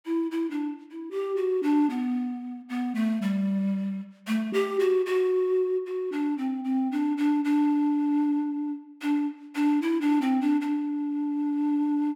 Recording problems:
none

